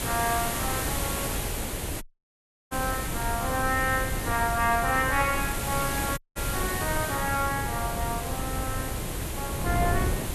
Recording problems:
background hiss; slope -3 dB per octave, SNR 3 dB
wind noise; below 250 Hz, SNR 5 dB
audio cutting out; at 2 s for 0.5 s and at 6 s

